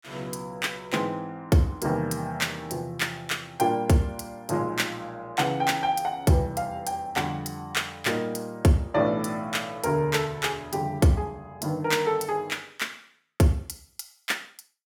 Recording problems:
none

